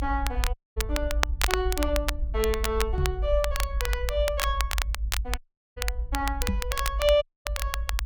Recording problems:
rumble; below 58 Hz, strongest tone 50 Hz, SNR 2 dB
crackling; vinyl, SNR 4 dB
audio cutting out; at 0.5 s, at 5.5 s and at 7 s
microphone bump; at 3 s and at 6.5 s; peak +5 dB vs average level

